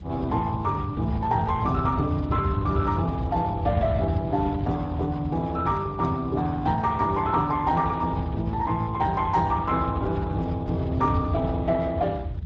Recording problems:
codec artefacts; Speex, log-spectral distance 2 dB
low-frequency rumble; below 130 Hz, SNR 7 dB

